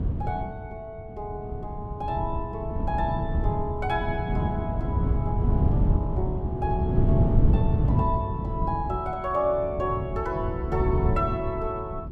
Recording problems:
wind on the microphone; below 160 Hz, SNR -3 dB

